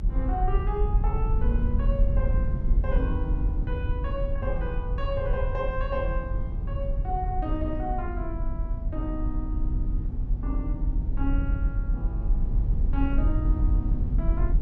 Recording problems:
low-frequency rumble; below 68 Hz, SNR -6 dB

